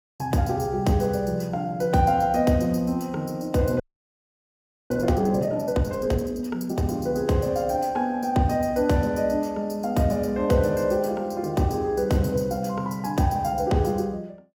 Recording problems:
frozen audio; at 4 s for 1 s

